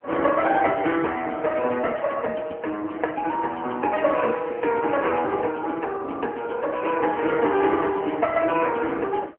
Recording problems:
phone line; 240 Hz to 3.1 kHz, AMR-NB

